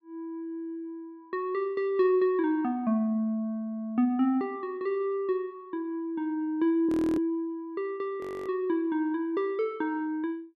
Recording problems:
frozen audio; at 7 s and at 8 s

